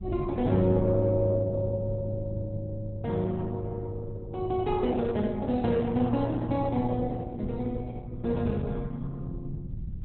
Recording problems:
lossy codec; Opus, log-spectral distance 2 dB, nothing above 4 kHz
low-frequency rumble; below 140 Hz, SNR 12 dB

